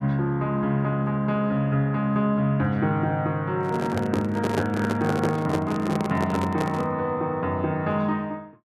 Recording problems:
handling noise; from 3.5 to 7 s; peak +2 dB vs average level

